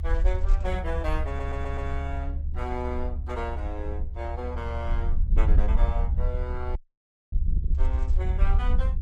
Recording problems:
lossy compression; Opus, log-spectral distance 2 dB, nothing above 15.5 kHz
low-frequency rumble; below 72 Hz, SNR -7 dB
audio stuttering; at 1.5 s
dropout; at 7 s for 0.5 s
microphone thump; at 7.5 s; peak -33 dB vs average level

